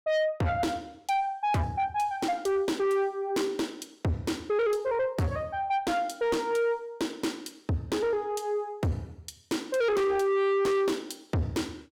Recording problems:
distorted audio; soft clipping, signal-to-distortion ratio 6 dB

